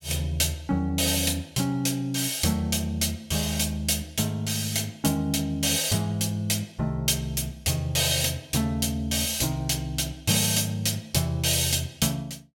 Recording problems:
none

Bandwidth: 18.5 kHz